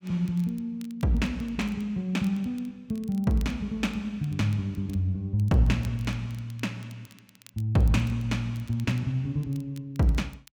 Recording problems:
crackling; vinyl, SNR 27 dB

